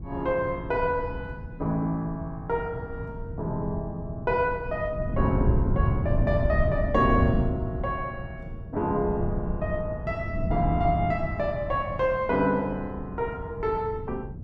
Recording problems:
wind on the microphone; below 160 Hz, SNR 4 dB

